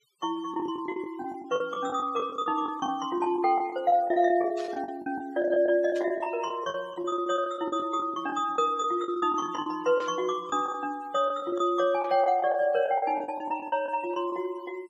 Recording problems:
denoising artefacts; signal-to-artefact ratio 23 dB
lost packets; 15% of the sound replaced, filled with the last packet
static burst; 4 times, first at 4.5 s; peak -14 dB vs average level

